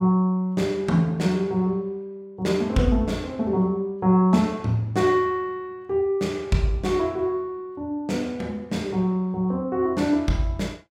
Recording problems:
none

